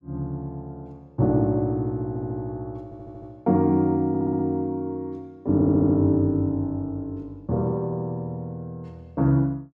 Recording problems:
audio stuttering; 4 times, first at 2 s

